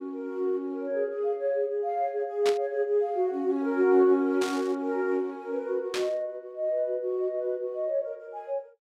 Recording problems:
burst of static; at 2.5 s, at 4.5 s and at 6 s; peak -1 dB vs average level

